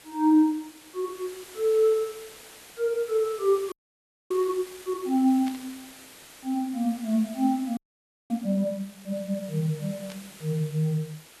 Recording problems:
background hiss; slope -1 dB per octave, SNR 19 dB
frozen audio; at 3.5 s for 0.5 s and at 8 s for 0.5 s
burst of static; at 5.5 s and at 10 s; peak -11 dB vs average level

